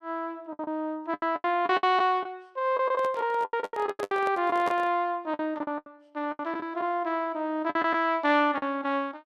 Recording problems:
packet loss; 14% of the sound replaced, filled with the last packet
microphone handling noise; from 3 to 5 s; peak -3 dB vs average level

